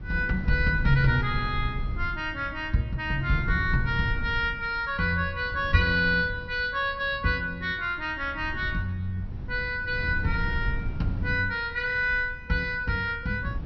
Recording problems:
treble missing; nothing above 5.9 kHz
wind on the microphone; below 110 Hz, SNR 9 dB

